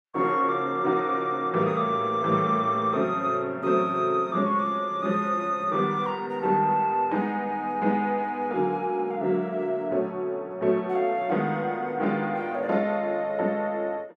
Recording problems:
none

